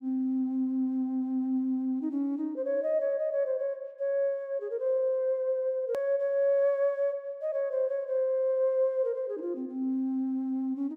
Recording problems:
edit click; at 6 s

